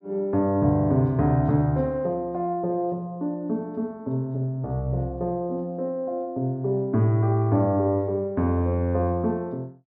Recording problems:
none

